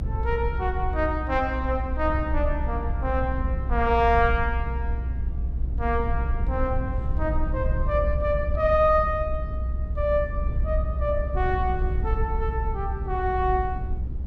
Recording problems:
low-frequency rumble; below 68 Hz, SNR 2 dB

